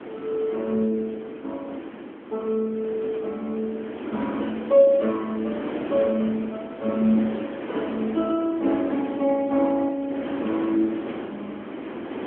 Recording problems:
telephone audio; 170 Hz to 3.6 kHz, AMR-NB
wind on the microphone; below 640 Hz, SNR 9 dB

